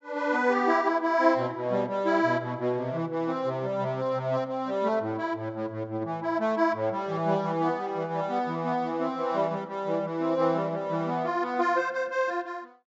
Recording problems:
low-pass filter; nothing above 8 kHz

